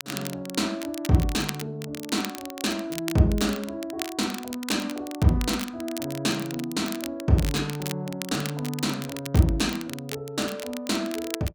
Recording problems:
crackle; vinyl, SNR 11 dB

